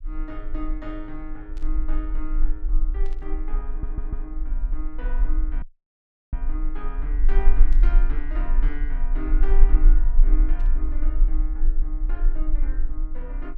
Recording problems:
low-frequency rumble; below 34 Hz, strongest tone 18 Hz, SNR -12 dB
static burst; 4 times, first at 1.5 s; peak -10 dB vs average level
stutter; at 3.5 s
audio cutting out; at 5.5 s for 0.5 s

